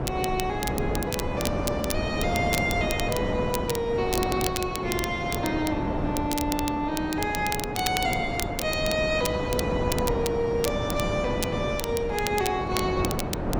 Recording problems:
wind on the microphone; below 590 Hz, SNR 2 dB
crackling; vinyl, SNR 7 dB

